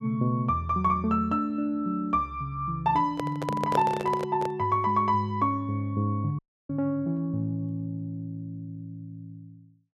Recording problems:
microphone handling noise; from 3 to 4.5 s; peak +3 dB vs average level
dropout; at 6.5 s

